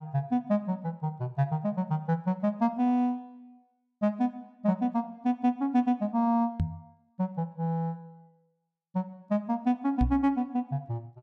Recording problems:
microphone thump; at 6.5 s and at 10 s; peak +5 dB vs average level

